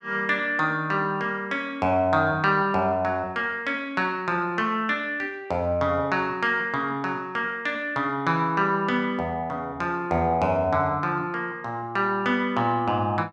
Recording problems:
none

